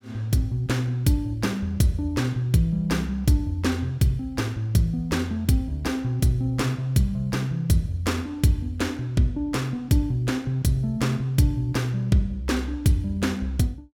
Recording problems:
none

